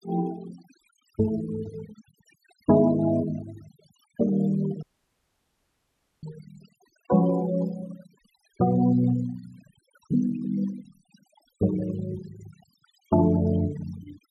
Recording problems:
denoising artefacts; signal-to-artefact ratio 20 dB
dropout; at 5 s for 1.5 s

